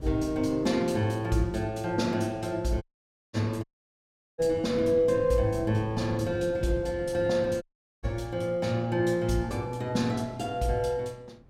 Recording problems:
wind on the microphone; below 250 Hz, SNR 17 dB
audio cutting out; at 3 s for 0.5 s, at 3.5 s for 0.5 s and at 7.5 s

